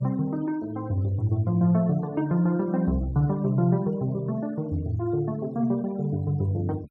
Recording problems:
denoising artefacts; signal-to-artefact ratio 27 dB

